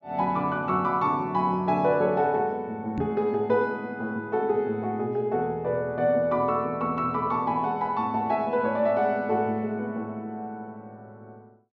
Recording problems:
low-pass filter; nothing above 8 kHz
microphone bump; at 3 s; peak -2 dB vs average level

